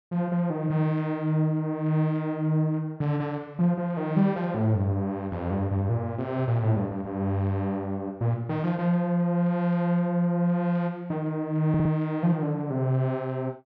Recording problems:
stutter; at 12 s

